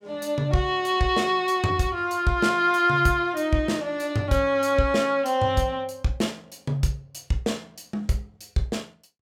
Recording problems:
none

